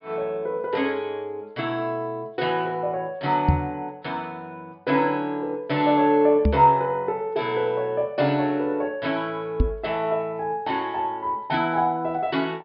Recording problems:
treble missing; nothing above 5.5 kHz
microphone thump; at 3.5 s, at 6.5 s and at 9.5 s; peak +8 dB vs average level

